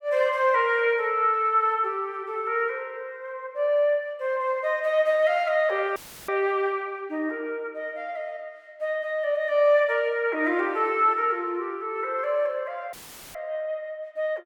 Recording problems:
dropout; at 6 s and at 13 s; filled with static

